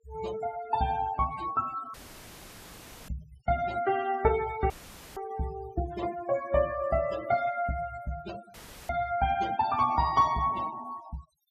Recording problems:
denoising artefacts; signal-to-artefact ratio 16 dB
audio cutting out; at 2 s for 1 s, at 4.5 s and at 8.5 s; filled with static

